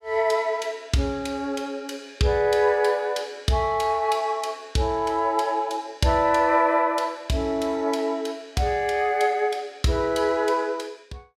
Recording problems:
none

